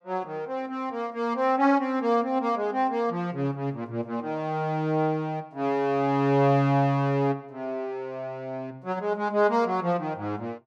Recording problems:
none

